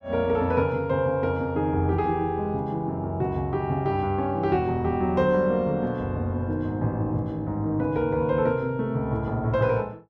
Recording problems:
none

